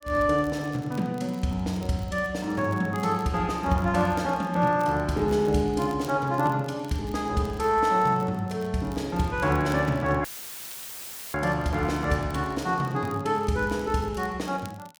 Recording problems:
crackle; vinyl, SNR 26 dB
dropout; at 10 s for 1 s; filled with static

